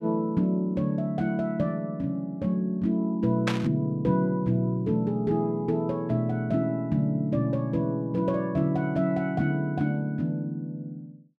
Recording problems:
burst of static; at 3.5 s; peak +2 dB vs average level

